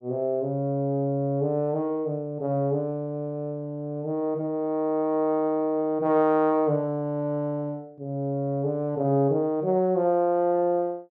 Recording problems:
none

